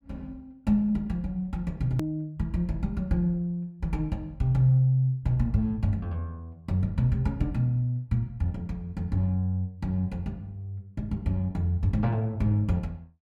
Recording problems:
hard cut with a click; at 2 s

